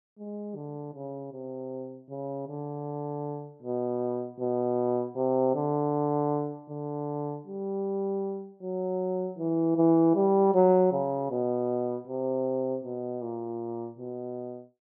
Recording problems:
none

